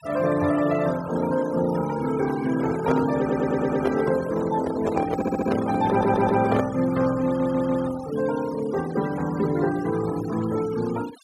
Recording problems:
noise reduction artefacts; signal-to-artefact ratio 15 dB
handling noise; from 2.5 to 6.5 s; peak +2 dB vs average level
audio stuttering; 4 times, first at 3 s

